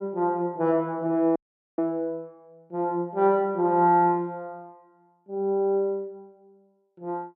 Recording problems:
audio cutting out; at 1.5 s

